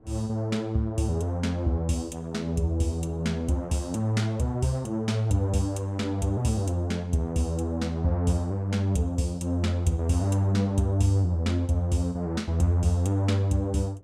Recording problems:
wind noise; below 500 Hz, SNR 28 dB

